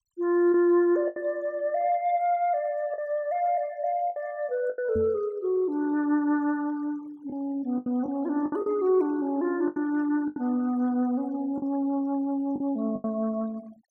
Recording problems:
noise reduction artefacts; signal-to-artefact ratio 27 dB
lost packets; 6% of the sound replaced, filled with the last packet
microphone bump; at 5 s; peak -3 dB vs average level

